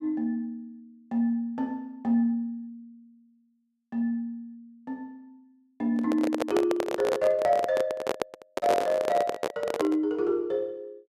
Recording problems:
handling noise; from 6 to 10 s; peak +4 dB vs average level

